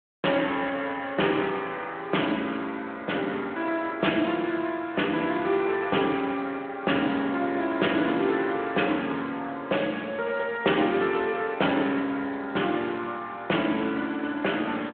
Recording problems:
telephone audio; 260 Hz to 3.4 kHz, Speex

